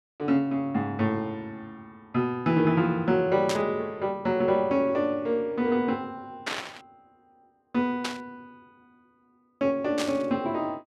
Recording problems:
static burst; 4 times, first at 3.5 s; peak 0 dB vs average level

